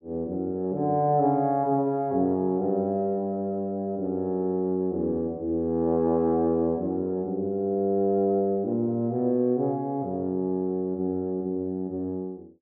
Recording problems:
none

